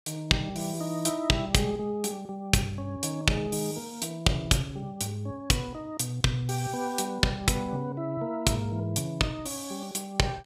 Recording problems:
none

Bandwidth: 15.5 kHz